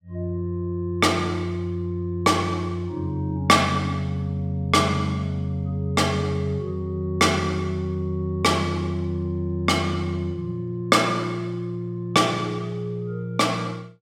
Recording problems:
none

